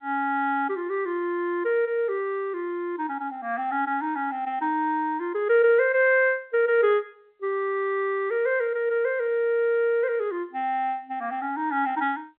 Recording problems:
phone line; 340 Hz to 3.6 kHz, G.711

